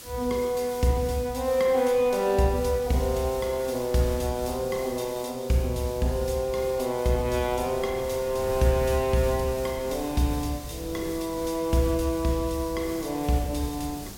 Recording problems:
background hiss; SNR 16 dB
wind noise; below 260 Hz, SNR 19 dB

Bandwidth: 16.5 kHz